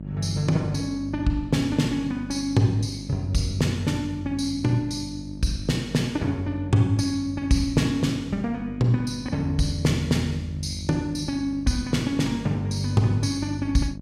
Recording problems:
hum; 50 Hz, harmonics up to 650 Hz, SNR 13 dB

